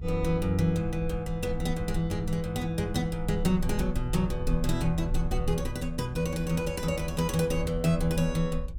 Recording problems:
rumble; below 60 Hz, SNR 8 dB

